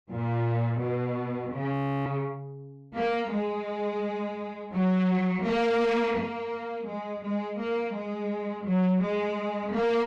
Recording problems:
distorted audio; soft clipping, signal-to-distortion ratio 6 dB
audio freezing; at 1.5 s

